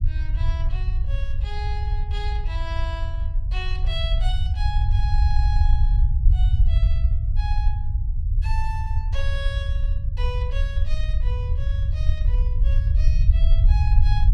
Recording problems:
rumble; below 70 Hz, SNR -13 dB

